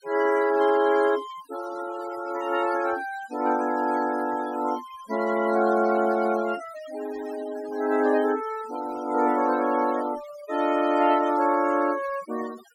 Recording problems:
noise reduction artefacts; signal-to-artefact ratio 17 dB

